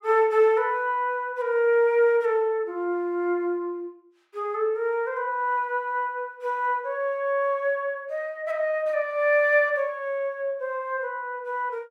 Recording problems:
none

